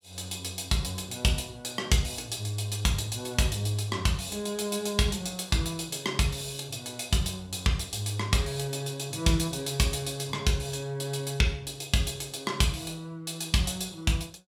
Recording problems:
none

